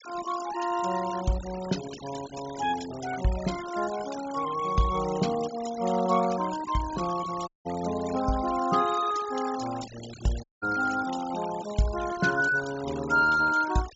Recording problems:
treble missing; nothing above 8 kHz
denoising artefacts; signal-to-artefact ratio 14 dB
audio cutting out; at 7.5 s and at 10 s

